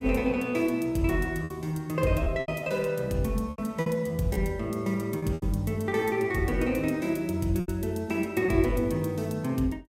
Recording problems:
lost packets; 6% of the sound replaced, filled with repeated pitch periods

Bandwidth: 16 kHz